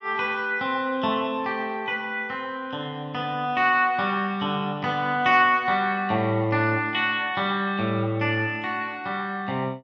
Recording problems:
none

